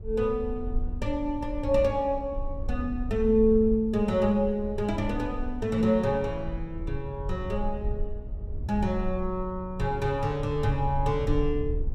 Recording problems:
low-frequency rumble; below 64 Hz, SNR 9 dB

